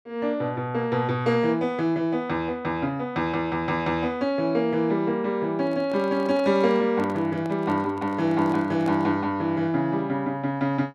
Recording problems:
microphone handling noise; from 5.5 to 9 s; peak -7 dB vs average level

